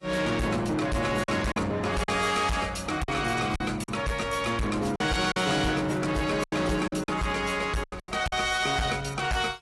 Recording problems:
codec artefacts; AAC, log-spectral distance 5 dB, nothing above 11.6 kHz
distortion; soft clipping, signal-to-distortion ratio 7 dB
lost packets; 7% of the sound replaced, filled with silence

